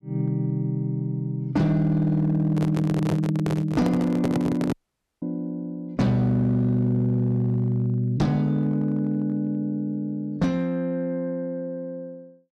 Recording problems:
distortion; hard clipping, signal-to-distortion ratio 12 dB
microphone handling noise; from 2.5 to 4.5 s; peak +1 dB vs average level
audio cutting out; at 4.5 s

